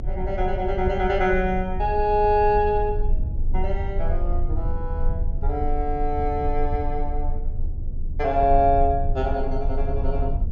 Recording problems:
treble cut off; nothing above 7.1 kHz
low-frequency rumble; below 60 Hz, strongest tone 22 Hz, SNR 5 dB

